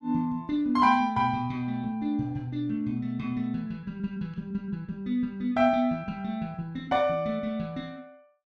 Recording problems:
none

